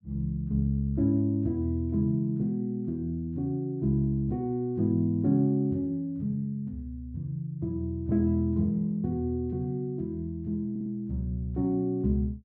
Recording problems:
audio stuttering; at 11 s

